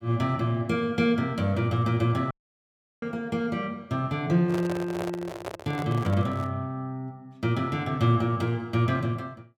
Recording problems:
audio cutting out; at 2.5 s for 0.5 s
microphone handling noise; from 4.5 to 6.5 s; peak -2 dB vs average level

